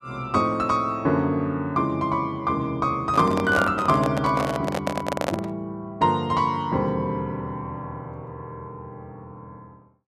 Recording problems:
microphone handling noise; from 3 to 5.5 s; peak +2 dB vs average level

